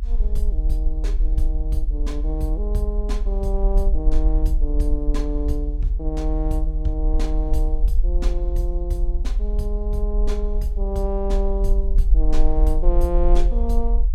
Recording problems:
low-frequency rumble; below 42 Hz, strongest tone 38 Hz, SNR -5 dB

